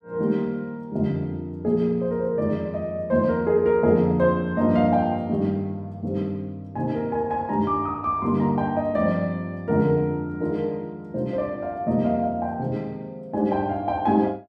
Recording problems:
none

